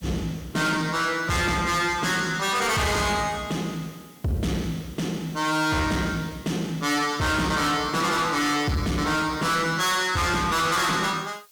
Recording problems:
distortion; soft clipping, signal-to-distortion ratio 7 dB
hiss; slope +2 dB per octave, SNR 27 dB

